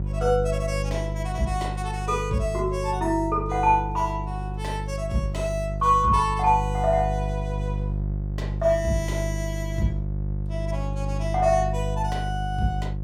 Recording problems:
hum; 50 Hz, harmonics up to 500 Hz, SNR 4 dB

